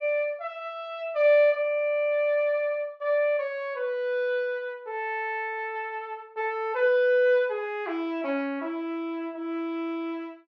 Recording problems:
none

